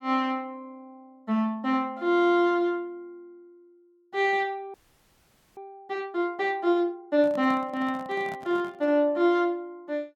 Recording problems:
frozen audio; at 4.5 s for 1 s
handling noise; from 7 to 9 s; peak -11 dB vs average level

